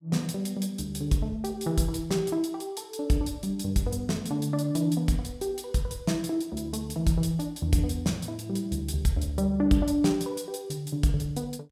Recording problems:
none

